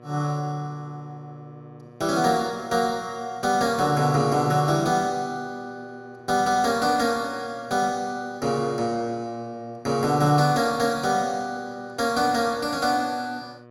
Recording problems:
electrical hum; 60 Hz, harmonics up to 1.9 kHz, SNR 25 dB

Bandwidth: 16.5 kHz